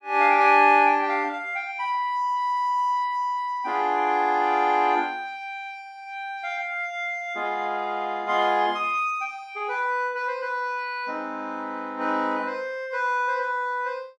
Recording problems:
none

